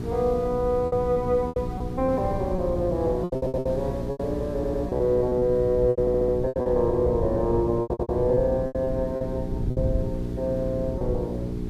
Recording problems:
hum; 60 Hz, harmonics up to 420 Hz, SNR 8 dB
background hiss; slope -6 dB per octave, SNR 20 dB
wind on the microphone; below 120 Hz, SNR 9 dB
packet loss; 10% of the sound replaced, filled with repeated pitch periods
audio stuttering; 4 times, first at 3.5 s

